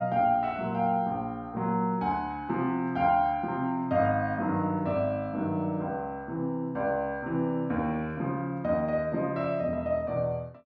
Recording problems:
none

